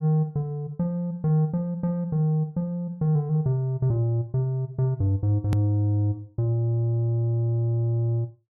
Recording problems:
hard cut with a click; at 5.5 s

